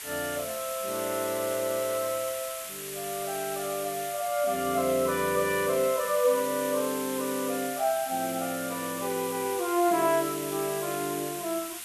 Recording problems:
hiss; SNR 7 dB

